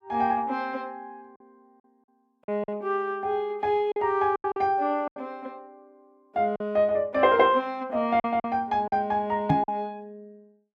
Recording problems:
lost packets; 6% of the sound replaced, filled with silence
microphone bump; at 9.5 s; peak +5 dB vs average level

